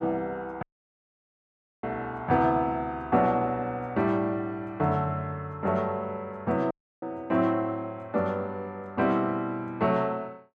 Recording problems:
dropout; at 0.5 s for 1 s and at 6.5 s

